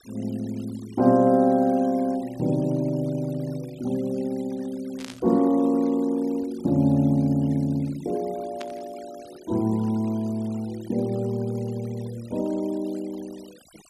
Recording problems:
denoising artefacts; signal-to-artefact ratio 25 dB
static burst; at 5 s and at 8.5 s; peak -10 dB vs average level

